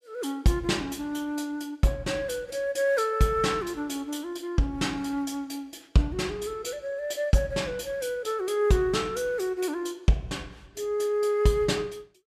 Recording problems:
none

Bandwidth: 14.5 kHz